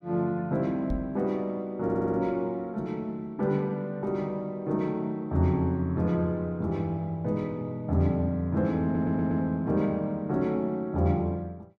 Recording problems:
microphone thump; at 1 s; peak -1 dB vs average level
audio stuttering; at 2 s and at 9 s

